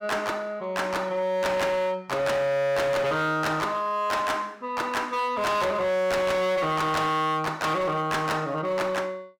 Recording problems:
distorted audio; hard clipping, signal-to-distortion ratio 8 dB

